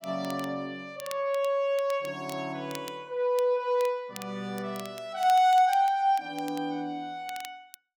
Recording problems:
crackling; vinyl, SNR 19 dB

